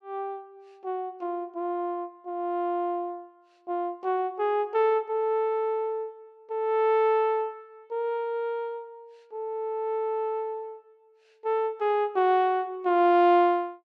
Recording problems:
none

